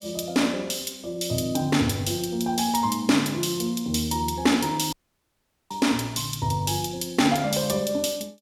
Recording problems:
audio cutting out; at 5 s for 1 s

